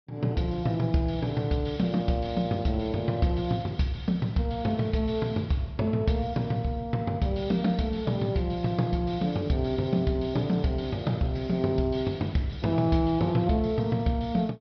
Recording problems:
low-pass filter; nothing above 5.5 kHz

